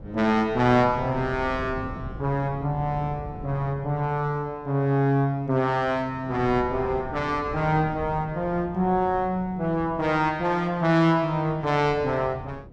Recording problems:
wind on the microphone; below 210 Hz, SNR 15 dB

